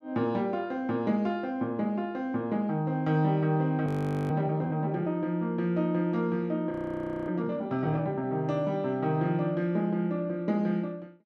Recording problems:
audio freezing; at 4 s and at 6.5 s for 0.5 s

